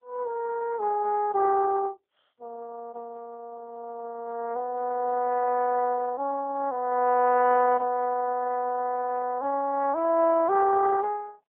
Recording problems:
phone line; 300 Hz to 2.3 kHz, AMR-NB

